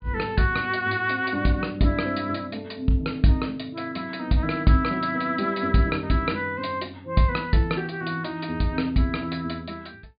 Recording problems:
treble missing; nothing above 4.8 kHz

